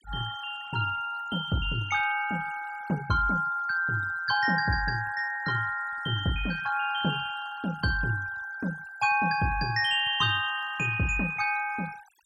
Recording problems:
denoising artefacts; signal-to-artefact ratio 17 dB

